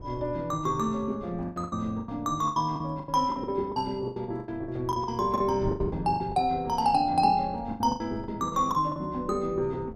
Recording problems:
wind noise; below 270 Hz, SNR 16 dB
packet loss; 15% of the sound replaced, filled with the last packet

